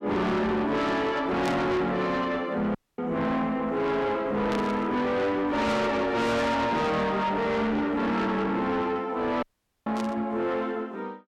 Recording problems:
distorted audio; soft clipping, signal-to-distortion ratio 7 dB
burst of static; at 1.5 s, at 4.5 s and at 10 s; peak -7 dB vs average level
audio cutting out; at 3 s and at 9.5 s

